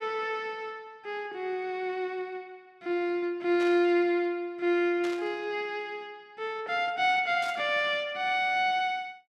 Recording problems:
static burst; at 3.5 s, at 5 s and at 7.5 s; peak -9 dB vs average level

